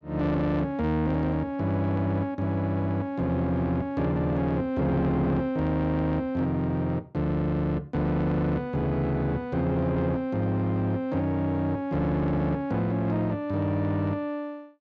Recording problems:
distorted audio; soft clipping, signal-to-distortion ratio 12 dB

